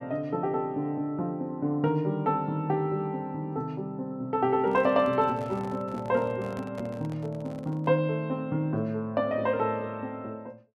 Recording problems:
handling noise; from 4.5 to 8 s; peak -9 dB vs average level

